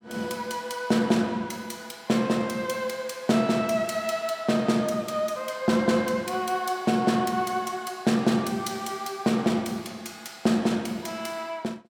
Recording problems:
none

